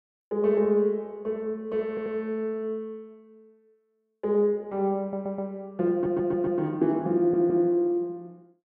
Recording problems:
audio stuttering; 4 times, first at 2 s

